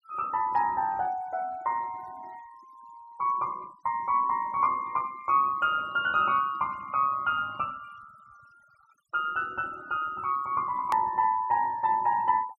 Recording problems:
noise reduction artefacts; signal-to-artefact ratio 26 dB
hard cut with a click; at 11 s

